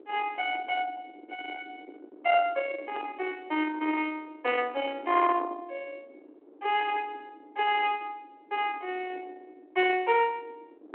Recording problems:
phone line; 260 Hz to 3.3 kHz, G.726
distortion; soft clipping, signal-to-distortion ratio 19 dB
wind on the microphone; below 1.2 kHz, SNR 14 dB

